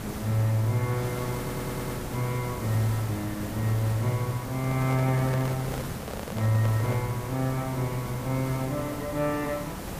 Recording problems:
background hiss; slope -5 dB per octave, SNR 8 dB
stutter; at 1.5 s
handling noise; from 4.5 to 7 s; peak -4 dB vs average level

